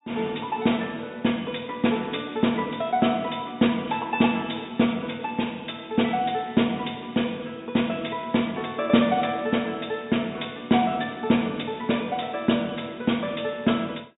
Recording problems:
low-pass filter; nothing above 4 kHz

